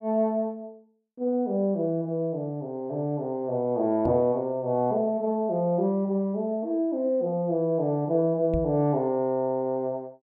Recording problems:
microphone bump; at 4 s and at 8.5 s; peak -2 dB vs average level

